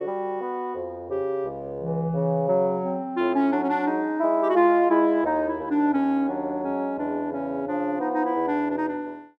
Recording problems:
none

